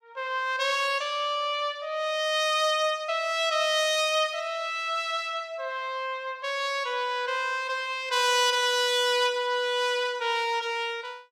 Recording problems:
none

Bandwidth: 16.5 kHz